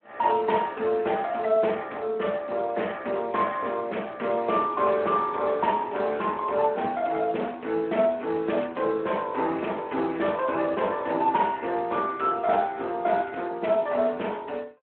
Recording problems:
phone line; 240 Hz to 3.1 kHz, Speex

